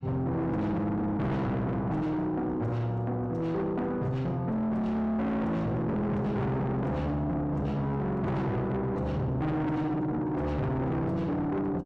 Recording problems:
distortion; soft clipping, signal-to-distortion ratio 7 dB

